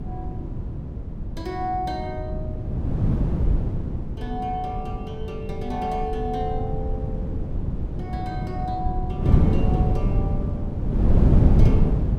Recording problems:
wind on the microphone; below 170 Hz, SNR -7 dB

